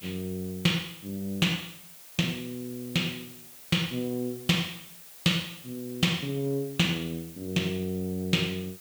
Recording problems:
background hiss; slope 0 dB per octave, SNR 16 dB

